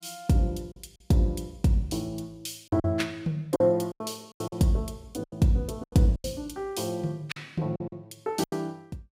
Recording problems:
packet loss; 10% of the sound replaced, filled with silence

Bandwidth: 15.5 kHz